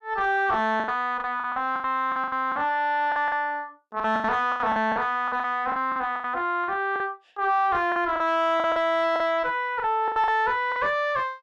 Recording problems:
distortion; soft clipping, signal-to-distortion ratio 9 dB
lost packets; 14% of the sound replaced, filled with the last packet

